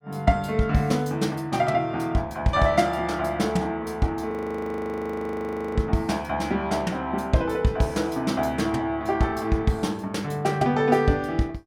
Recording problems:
frozen audio; at 4.5 s for 1.5 s

